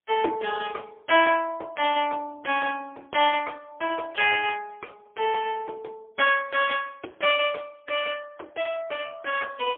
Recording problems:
phone line; 300 Hz to 3.3 kHz, AMR-NB, then MP3

